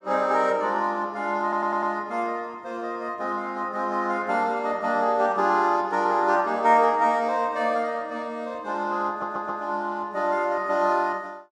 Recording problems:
stutter; at 1.5 s and at 9 s

